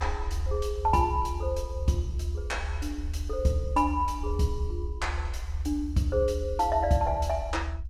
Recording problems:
low-frequency rumble; below 76 Hz, SNR 5 dB

